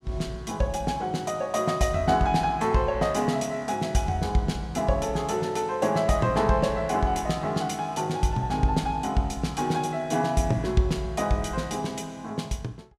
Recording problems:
none

